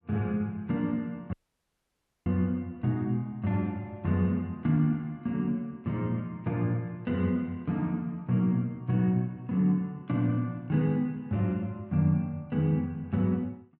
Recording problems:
audio cutting out; at 1.5 s for 1 s

